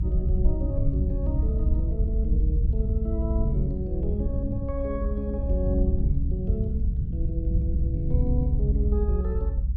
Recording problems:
low-frequency rumble; below 70 Hz, SNR -5 dB

